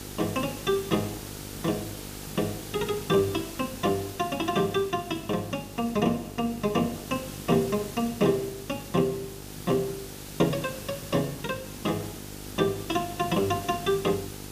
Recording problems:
hum; 50 Hz, harmonics up to 1.4 kHz, SNR 15 dB
hiss; SNR 12 dB

